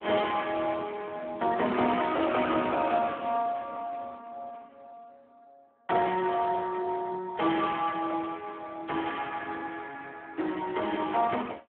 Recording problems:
telephone audio; 220 Hz to 3.4 kHz, Speex

